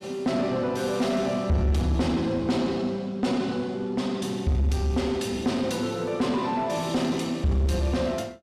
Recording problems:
distorted audio; soft clipping, signal-to-distortion ratio 11 dB

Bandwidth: 14 kHz